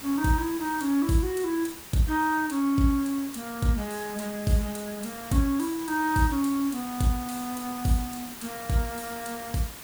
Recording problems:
hiss; slope -2 dB per octave, SNR 12 dB

